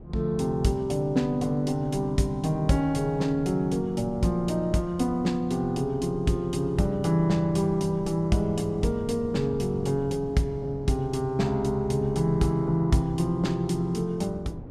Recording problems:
wind on the microphone; below 290 Hz, SNR 16 dB

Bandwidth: 14.5 kHz